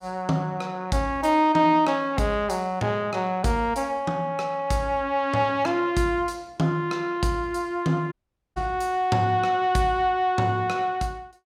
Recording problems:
dropout; at 8 s

